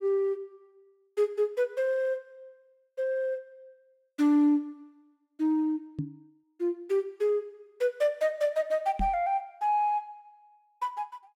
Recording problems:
microphone bump; at 6 s and at 9 s; peak 0 dB vs average level

